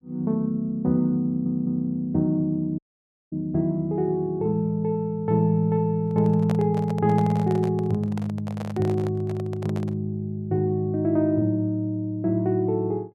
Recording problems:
audio stuttering; at 1.5 s
audio cutting out; at 3 s for 0.5 s
handling noise; from 6 to 10 s; peak -5 dB vs average level

